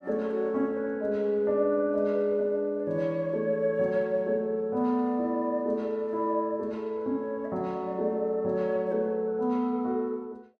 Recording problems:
none

